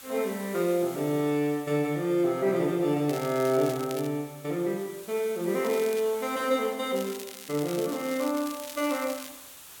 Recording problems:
background hiss; slope 0 dB per octave, SNR 17 dB
crackle; at 3 s, at 5.5 s and from 7 to 9.5 s; loose cable, SNR 15 dB

